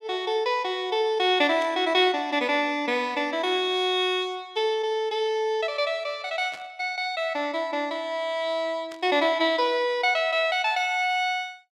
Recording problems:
burst of static; at 1.5 s, at 6.5 s and at 9 s; peak -14 dB vs average level

